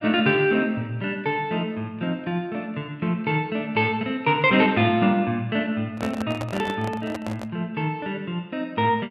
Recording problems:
handling noise; from 6 to 7.5 s; peak -2 dB vs average level

